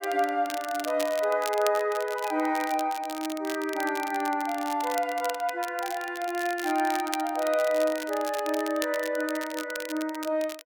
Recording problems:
crackling; vinyl, SNR 12 dB

